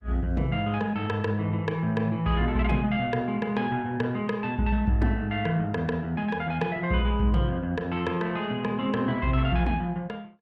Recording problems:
codec artefacts; Opus, log-spectral distance 2 dB, nothing above 13.1 kHz

